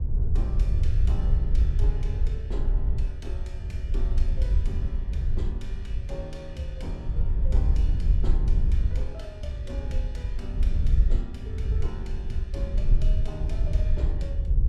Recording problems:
wind on the microphone; below 66 Hz, SNR -12 dB

